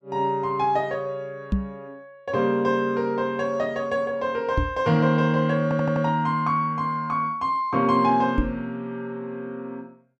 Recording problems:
microphone bump; at 1.5 s, at 4.5 s and at 8.5 s; peak +4 dB vs average level
stutter; at 5.5 s

